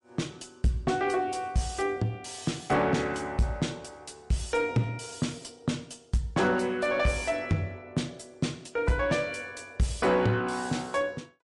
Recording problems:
codec artefacts; MP3, log-spectral distance 3 dB, nothing above 10.7 kHz
distorted audio; soft clipping, signal-to-distortion ratio 12 dB

